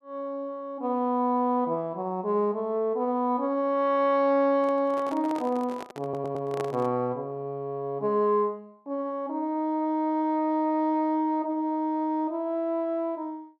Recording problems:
handling noise; from 4.5 to 7 s; peak -4 dB vs average level
audio stuttering; at 6 s

